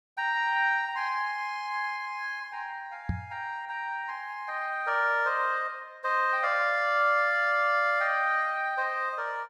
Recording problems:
microphone thump; at 3 s; peak 0 dB vs average level

